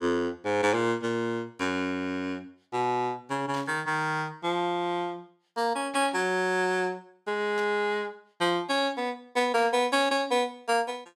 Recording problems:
static burst; 4 times, first at 3.5 s; peak -11 dB vs average level

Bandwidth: 15.5 kHz